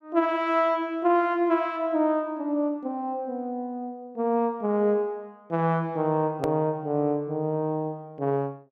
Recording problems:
click at an edit; at 6.5 s

